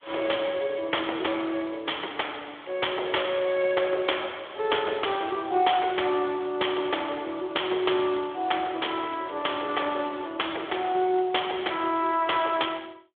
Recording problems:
phone line; 320 Hz to 3.5 kHz, Speex

